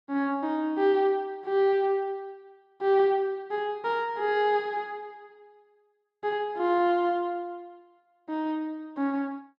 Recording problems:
none

